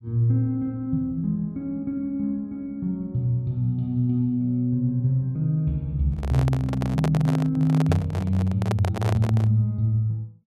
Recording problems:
microphone handling noise; from 6 to 9.5 s; peak +1 dB vs average level

